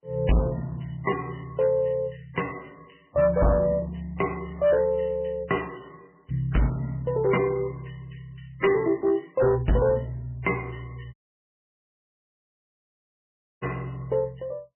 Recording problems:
codec artefacts; MP3, log-spectral distance 7 dB, nothing above 3 kHz
distorted audio; hard clipping, signal-to-distortion ratio 8 dB
dropout; at 11 s for 2.5 s

